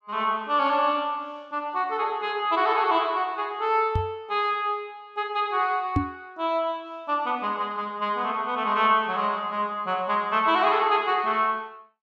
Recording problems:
microphone bump; at 4 s and at 6 s; peak +5 dB vs average level

